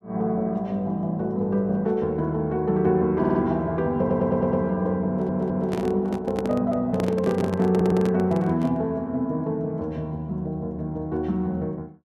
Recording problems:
audio stuttering; 4 times, first at 3 s
handling noise; from 5 to 9 s; peak -2 dB vs average level

